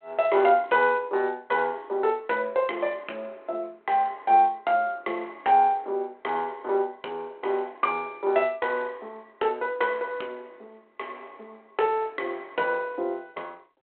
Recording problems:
telephone audio; 300 Hz to 3.3 kHz, G.726

